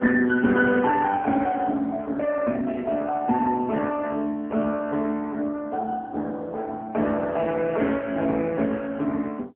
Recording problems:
telephone audio; 170 Hz to 3.4 kHz, AMR-NB

